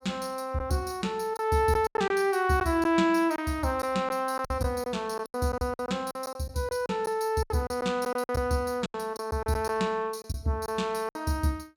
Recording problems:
lost packets; 10% of the sound replaced, filled with silence

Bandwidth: 17 kHz